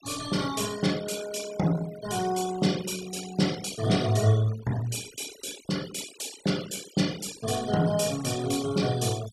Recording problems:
denoising artefacts; signal-to-artefact ratio 14 dB

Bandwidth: 15 kHz